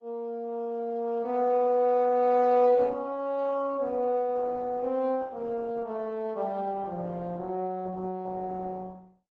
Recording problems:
lossy compression; AAC, then Opus, log-spectral distance 2 dB

